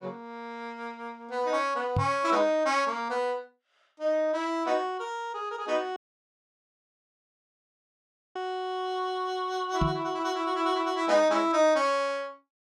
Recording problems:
microphone bump; at 2 s and at 10 s; peak +3 dB vs average level
dropout; at 6 s for 2.5 s

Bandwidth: 14 kHz